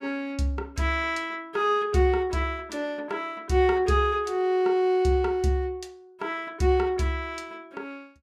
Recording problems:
none

